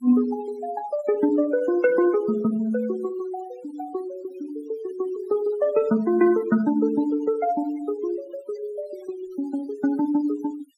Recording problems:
denoising artefacts; signal-to-artefact ratio 19 dB

